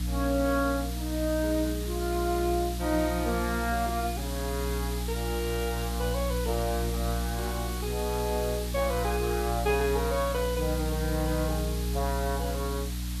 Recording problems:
hum; 60 Hz, harmonics up to 300 Hz, SNR 3 dB
hiss; slope +2 dB per octave, SNR 9 dB

